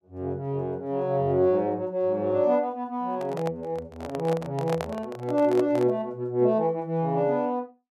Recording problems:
microphone handling noise; from 3 to 6 s; peak -2 dB vs average level

